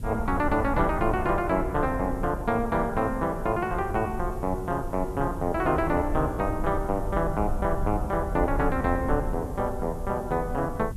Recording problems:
hiss; slope +2 dB per octave, SNR 27 dB
low-frequency rumble; below 84 Hz, SNR 8 dB

